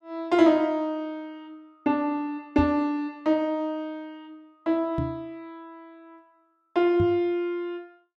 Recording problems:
knock on the microphone; at 2.5 s, at 5 s and at 7 s; peak +1 dB vs average level

